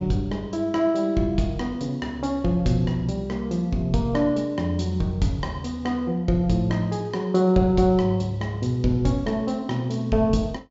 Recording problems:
treble missing; nothing above 8 kHz

